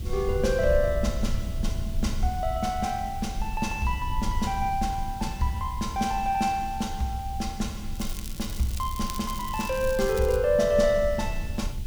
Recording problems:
background hiss; SNR 21 dB
rumble; below 76 Hz, SNR 7 dB
crackle; from 8 to 10 s; loose cable, SNR 13 dB

